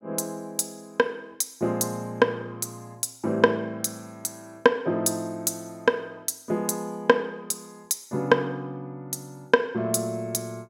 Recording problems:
none

